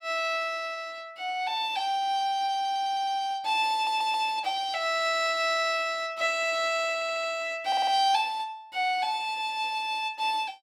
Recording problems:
stutter; 4 times, first at 2.5 s

